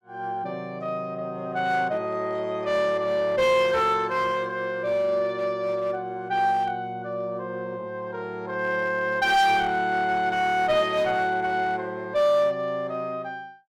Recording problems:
distortion; hard clipping, uneven, signal-to-distortion ratio 11 dB

